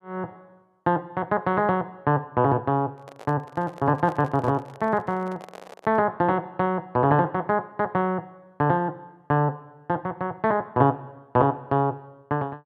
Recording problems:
microphone handling noise; from 3 to 6 s; peak -13 dB vs average level

